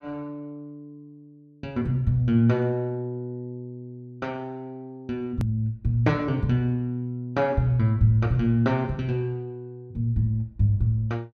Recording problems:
click at an edit; at 5.5 s

